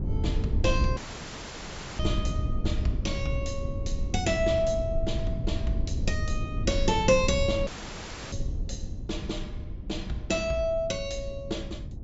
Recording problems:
treble cut off; nothing above 8 kHz
rumble; below 110 Hz, SNR 3 dB
dropout; at 1 s for 1 s and at 7.5 s for 0.5 s

